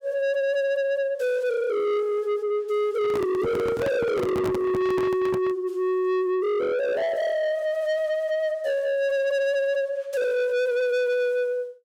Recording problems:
distorted audio; soft clipping, signal-to-distortion ratio 8 dB
microphone handling noise; from 3 to 5.5 s; peak +1 dB vs average level

